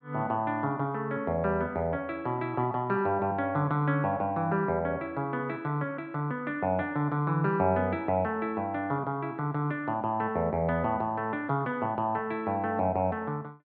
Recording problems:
none

